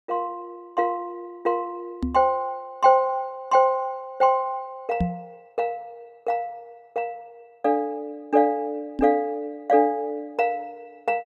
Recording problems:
microphone thump; at 2 s, at 5 s and at 9 s; peak +3 dB vs average level

